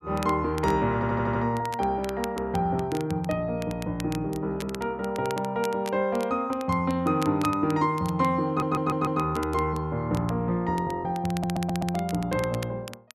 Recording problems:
crackling; vinyl, SNR 17 dB
audio stuttering; at 1 s, at 8.5 s and at 11 s

